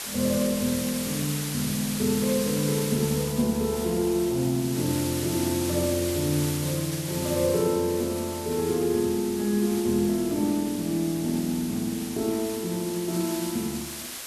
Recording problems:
background hiss; slope +1 dB per octave, SNR 7 dB

